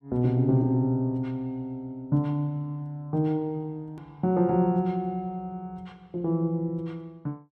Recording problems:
edit click; at 4 s

